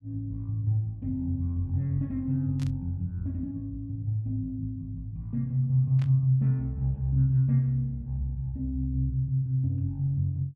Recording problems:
burst of static; at 2.5 s and at 6 s; peak -13 dB vs average level

